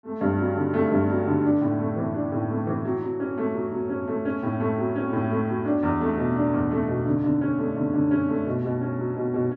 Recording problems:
none

